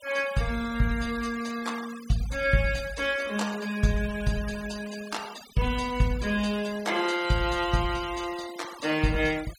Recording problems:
denoising artefacts; signal-to-artefact ratio 16 dB

